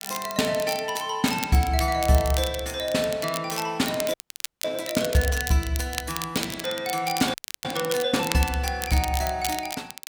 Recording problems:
crackle; vinyl, SNR 9 dB
audio freezing; at 4 s for 0.5 s and at 7.5 s

